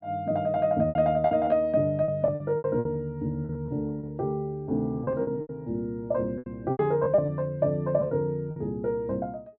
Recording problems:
low-pass filter; nothing above 5.5 kHz
lost packets; 12% of the sound replaced, filled with repeated pitch periods

